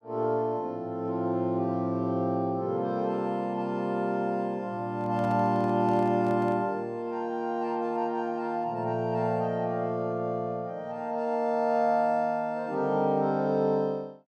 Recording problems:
handling noise; from 5 to 6.5 s; peak -12 dB vs average level

